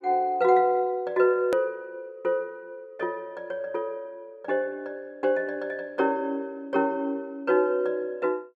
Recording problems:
click at an edit; at 1.5 s

